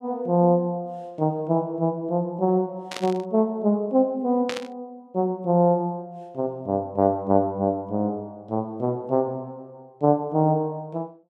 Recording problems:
static burst; at 3 s and at 4.5 s; peak -2 dB vs average level

